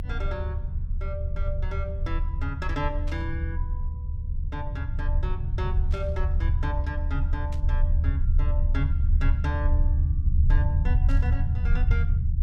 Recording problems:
electrical hum; 60 Hz, harmonics up to 420 Hz, SNR 17 dB
rumble; below 76 Hz, strongest tone 30 Hz, SNR -10 dB
static burst; 4 times, first at 3 s; peak -6 dB vs average level

